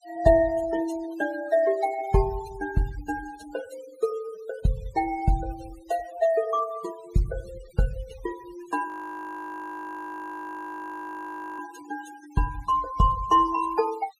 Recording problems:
denoising artefacts; signal-to-artefact ratio 18 dB
audio freezing; at 9 s for 2.5 s

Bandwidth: 15 kHz